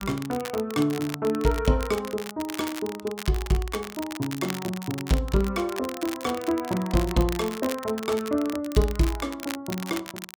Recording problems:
crackling; vinyl, SNR 11 dB

